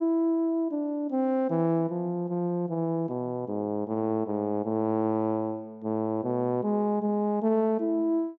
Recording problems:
treble missing; nothing above 8 kHz

